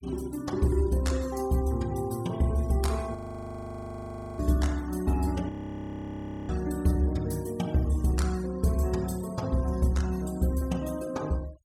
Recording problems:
denoising artefacts; signal-to-artefact ratio 21 dB
audio freezing; at 3 s for 1 s and at 5.5 s for 1 s

